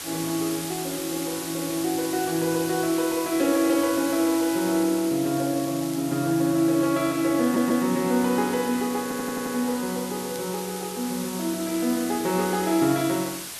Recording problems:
background hiss; slope +1 dB per octave, SNR 9 dB
crackling; at 5.5 s and at 10 s; loose cable, SNR 23 dB
audio stuttering; at 7.5 s and at 9 s

